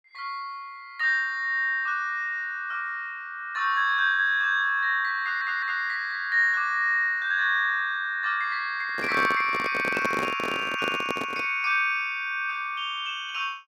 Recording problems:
audio stuttering; at 5 s
microphone handling noise; from 9 to 11 s; peak -1 dB vs average level

